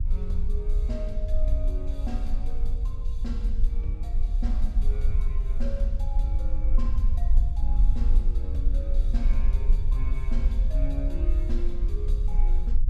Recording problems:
rumble; below 48 Hz, strongest tone 24 Hz, SNR -12 dB

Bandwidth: 14.5 kHz